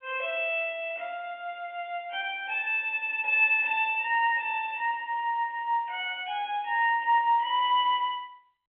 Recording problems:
phone line; 240 Hz to 3.5 kHz, G.711

